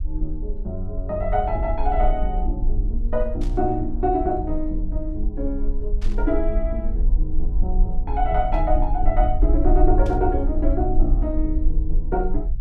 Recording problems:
low-frequency rumble; below 44 Hz, strongest tone 24 Hz, SNR 0 dB
burst of static; 4 times, first at 3.5 s; peak -13 dB vs average level

